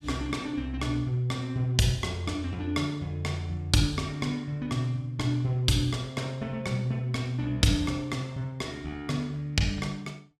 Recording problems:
none

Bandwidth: 14.5 kHz